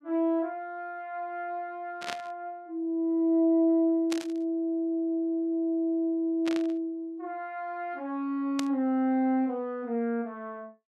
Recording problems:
static burst; 4 times, first at 2 s; peak -1 dB vs average level

